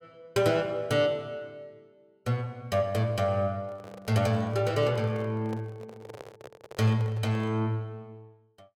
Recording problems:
microphone handling noise; from 3.5 to 7.5 s; peak -10 dB vs average level

